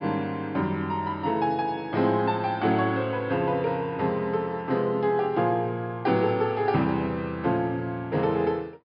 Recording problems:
treble cut off; nothing above 5.5 kHz

